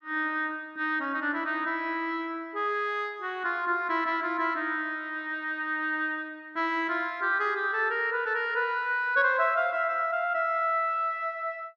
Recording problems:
none

